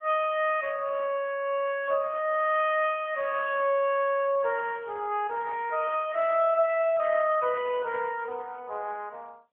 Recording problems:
phone line; 260 Hz to 3.3 kHz, AMR-NB

